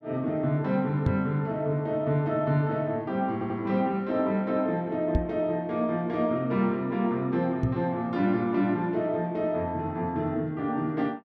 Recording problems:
knock on the microphone; at 1 s, at 5 s and at 7.5 s; peak +5 dB vs average level
audio stuttering; at 3.5 s

